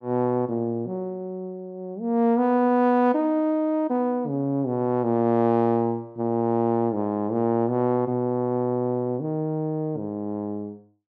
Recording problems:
none

